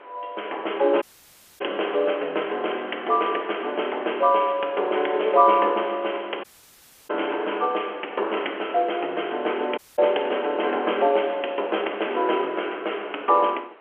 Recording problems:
telephone audio; 300 Hz to 3.3 kHz, G.711
wind on the microphone; below 1.6 kHz, SNR 22 dB
audio cutting out; at 1 s for 0.5 s, at 6.5 s for 0.5 s and at 10 s

